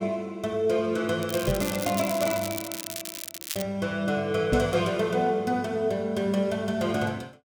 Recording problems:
crackling; from 1 to 3.5 s; loose cable, SNR 8 dB
microphone bump; at 1.5 s and at 4.5 s; peak +4 dB vs average level

